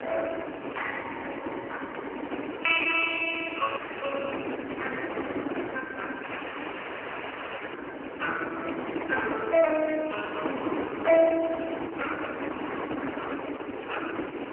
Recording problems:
phone line; 260 Hz to 3.1 kHz, AMR-NB
wind on the microphone; below 1.1 kHz, SNR 6 dB
audio cutting out; at 4 s and at 6 s for 1.5 s

